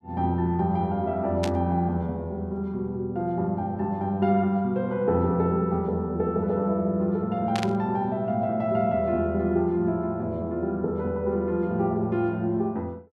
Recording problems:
static burst; at 1.5 s and at 7.5 s; peak -3 dB vs average level

